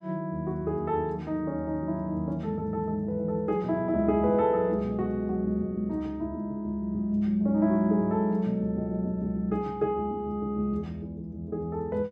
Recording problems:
none

